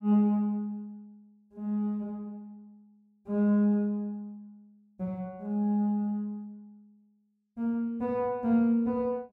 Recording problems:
none

